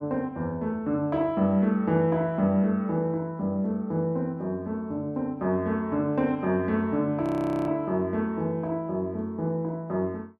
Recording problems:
frozen audio; at 7 s

